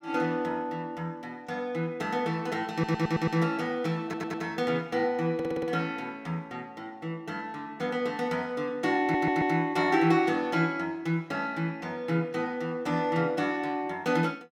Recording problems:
audio stuttering; 4 times, first at 2.5 s

